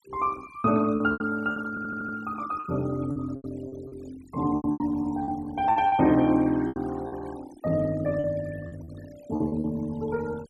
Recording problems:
denoising artefacts; signal-to-artefact ratio 20 dB
packet loss; 11% of the sound replaced, filled with repeated pitch periods
audio stuttering; at 1.5 s

